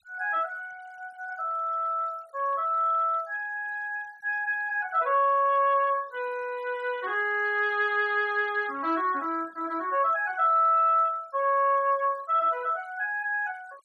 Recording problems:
noise reduction artefacts; signal-to-artefact ratio 26 dB

